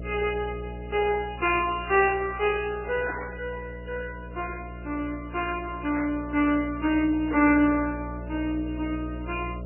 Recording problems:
codec artefacts; MP2, then MP3, log-spectral distance 4 dB, nothing above 2.5 kHz
hum; 60 Hz, harmonics up to 660 Hz, SNR 12 dB
static burst; at 1.5 s, at 3 s and at 6 s; peak -5 dB vs average level

